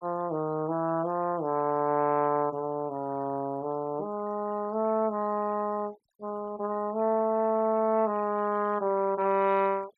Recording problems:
noise reduction artefacts; signal-to-artefact ratio 25 dB

